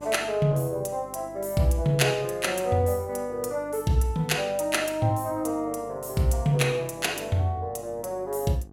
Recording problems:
electrical hum; 50 Hz, harmonics up to 1.2 kHz, SNR 22 dB

